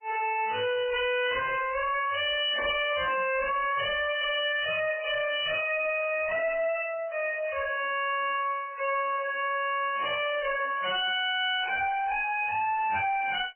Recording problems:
codec artefacts; MP3, log-spectral distance 7 dB, nothing above 2.5 kHz
distorted audio; hard clipping, signal-to-distortion ratio 5 dB

